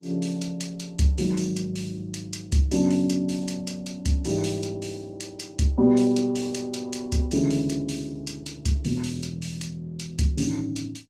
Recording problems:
lossy compression; Opus, log-spectral distance 3 dB, nothing above 17.7 kHz

